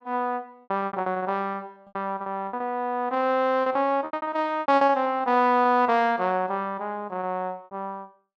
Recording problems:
packet loss; 14% of the sound replaced, filled with repeated pitch periods

